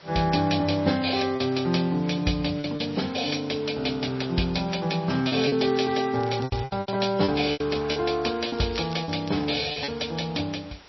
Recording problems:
codec artefacts; MP3, log-spectral distance 9 dB, nothing above 5.7 kHz
background hiss; slope -2 dB per octave, SNR 22 dB
packet loss; 7% of the sound replaced, filled with repeated pitch periods
crackle; from 5.5 to 6.5 s and from 8.5 to 10 s; loose cable, SNR 19 dB

